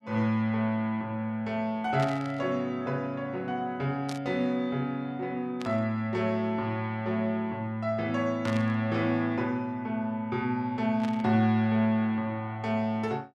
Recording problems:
burst of static; 5 times, first at 2 s; peak -6 dB vs average level

